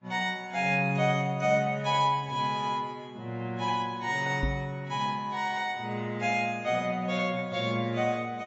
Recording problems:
lossy codec; AAC, log-spectral distance 2 dB, nothing above 7.6 kHz
microphone thump; at 4.5 s; peak +1 dB vs average level

